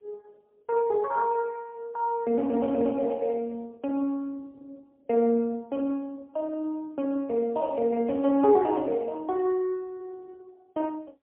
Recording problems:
telephone audio; 260 Hz to 2.1 kHz, AMR-NB, then MP3

